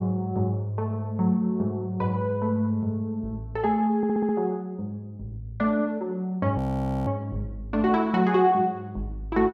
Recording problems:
audio stuttering; at 4 s
audio freezing; at 6.5 s

